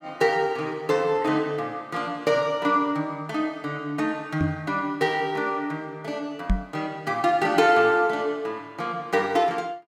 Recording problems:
microphone thump; at 4.5 s and at 6.5 s; peak +4 dB vs average level

